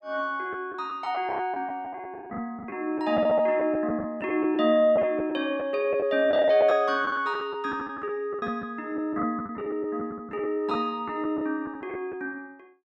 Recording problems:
packet loss; 9% of the sound replaced, filled with the last packet

